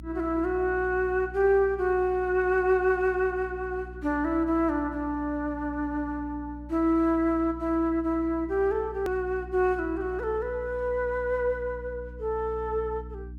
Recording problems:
hum; 60 Hz, harmonics up to 300 Hz, SNR 16 dB
edit click; at 9 s

